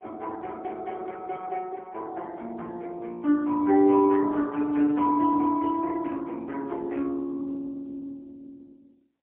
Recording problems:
telephone audio; 220 Hz to 2.5 kHz, AMR-NB, then MP3

